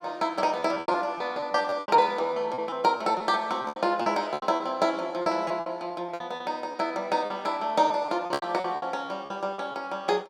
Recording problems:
lost packets; 14% of the sound replaced, filled with repeated pitch periods

